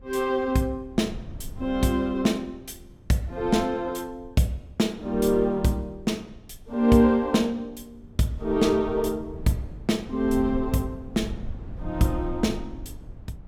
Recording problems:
wind on the microphone; below 110 Hz, SNR 16 dB

